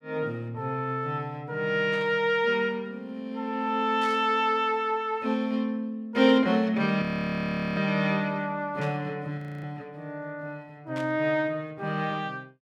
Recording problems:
static burst; 4 times, first at 2 s; peak -11 dB vs average level
frozen audio; at 7 s for 1 s and at 9.5 s

